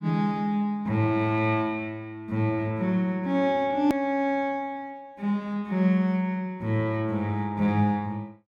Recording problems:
hard cut with a click; at 4 s

